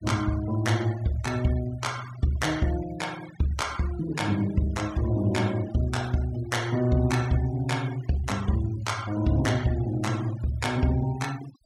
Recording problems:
noise reduction artefacts; signal-to-artefact ratio 18 dB

